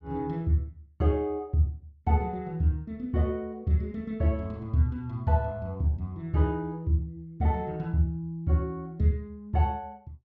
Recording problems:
none

